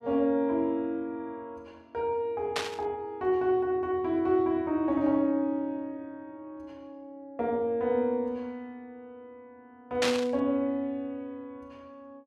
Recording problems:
static burst; at 2.5 s and at 10 s; peak +4 dB vs average level

